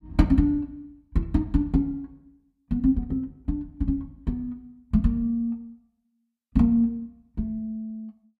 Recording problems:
none

